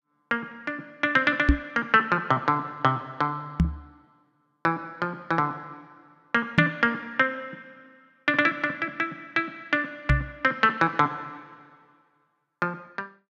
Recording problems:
microphone thump; 4 times, first at 1.5 s; peak +9 dB vs average level

